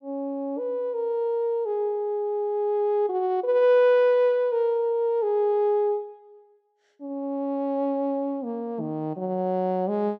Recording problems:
none

